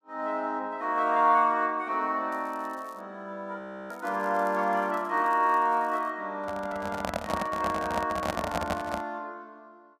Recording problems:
crackle; at 2.5 s and from 4 to 6 s; loose cable, SNR 29 dB
audio freezing; at 3.5 s
microphone handling noise; from 6.5 to 9 s; peak +2 dB vs average level

